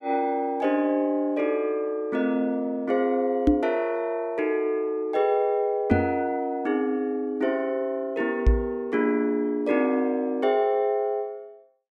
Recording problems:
knock on the microphone; at 3.5 s, at 6 s and at 8.5 s; peak +9 dB vs average level

